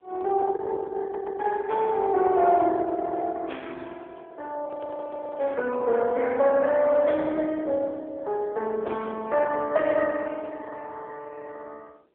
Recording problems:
phone line; 280 Hz to 3.4 kHz, AMR-NB
distortion; soft clipping, signal-to-distortion ratio 13 dB
wind on the microphone; below 840 Hz, SNR 15 dB
stutter; at 1 s
frozen audio; at 4.5 s for 0.5 s

